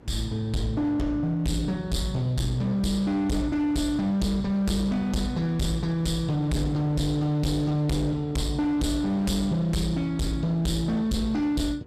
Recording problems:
distortion; hard clipping, signal-to-distortion ratio 7 dB
hum; 60 Hz, harmonics up to 480 Hz, SNR 28 dB
wind on the microphone; below 830 Hz, SNR 25 dB

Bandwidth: 14.5 kHz